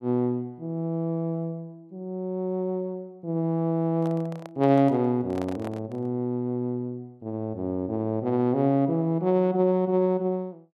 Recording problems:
microphone handling noise; from 4 to 6 s; peak -8 dB vs average level

